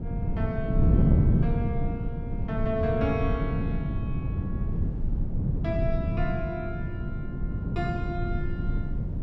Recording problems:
rumble; below 46 Hz, strongest tone 22 Hz, SNR 6 dB
wind noise; below 180 Hz, SNR -5 dB

